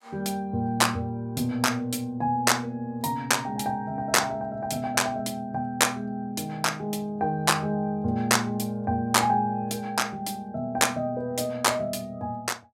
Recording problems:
none

